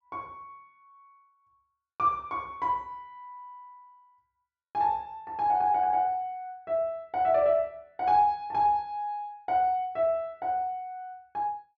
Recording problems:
none

